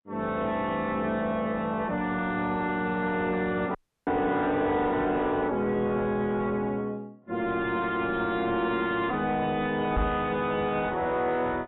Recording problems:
codec artefacts; AAC, log-spectral distance 2 dB, nothing above 3.6 kHz
distorted audio; soft clipping, signal-to-distortion ratio 9 dB
audio cutting out; at 4 s
knock on the microphone; at 10 s; peak +4 dB vs average level

